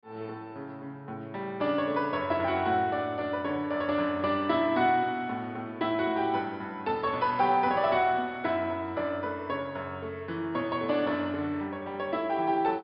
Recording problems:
treble missing; nothing above 5.5 kHz

